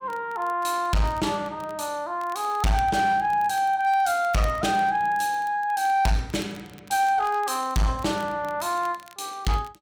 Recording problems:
distortion; hard clipping, signal-to-distortion ratio 10 dB
crackle; vinyl, SNR 26 dB

